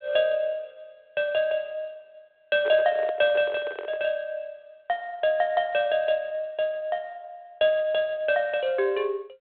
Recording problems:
telephone audio; 320 Hz to 3.4 kHz, G.726
microphone handling noise; from 2.5 to 4 s; peak -5 dB vs average level

